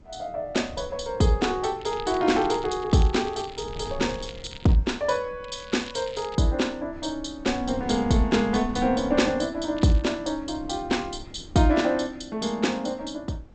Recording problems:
lossy codec; G.722, log-spectral distance 6 dB, nothing above 8 kHz
wind noise; below 200 Hz, SNR 18 dB
crackling; from 2 to 5 s, at 5.5 s and at 10 s; loose cable, SNR 19 dB

